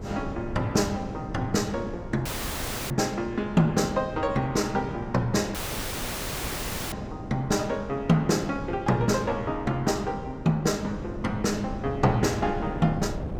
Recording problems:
wind noise; below 340 Hz, SNR 11 dB
audio cutting out; at 2.5 s for 0.5 s and at 5.5 s for 1.5 s

